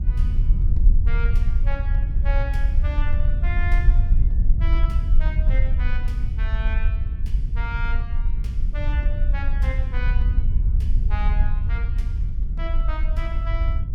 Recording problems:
rumble; below 58 Hz, SNR -12 dB

